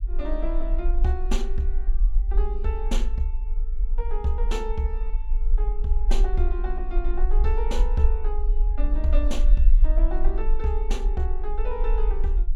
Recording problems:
low-frequency rumble; below 40 Hz, SNR -5 dB

